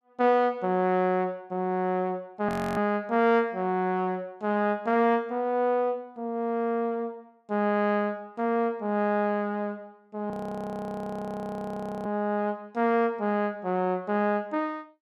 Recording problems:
frozen audio; at 2.5 s and at 10 s for 2 s

